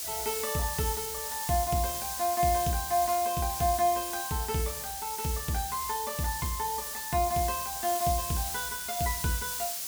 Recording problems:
background hiss; SNR 3 dB

